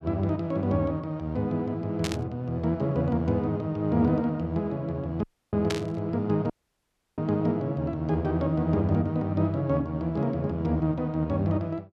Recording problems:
burst of static; at 2 s and at 5.5 s; peak 0 dB vs average level
dropout; at 5 s and at 6.5 s for 0.5 s

